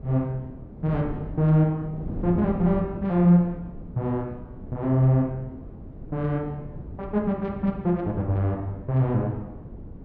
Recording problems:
wind noise; below 240 Hz, SNR 13 dB

